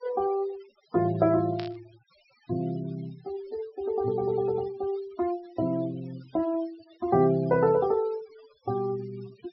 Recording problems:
treble cut off; nothing above 5.5 kHz
noise reduction artefacts; signal-to-artefact ratio 23 dB
static burst; at 1.5 s; peak -7 dB vs average level

